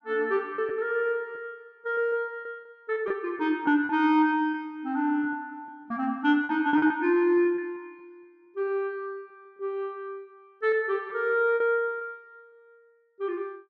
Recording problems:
lost packets; 7% of the sound replaced, filled with repeated pitch periods

